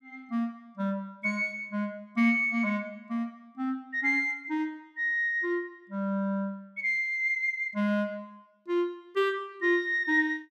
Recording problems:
none

